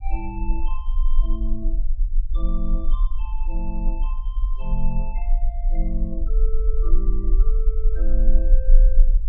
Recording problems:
rumble; below 36 Hz, strongest tone 24 Hz, SNR -11 dB

